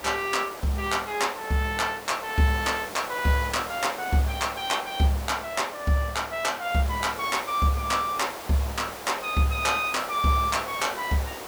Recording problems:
hiss; SNR 11 dB

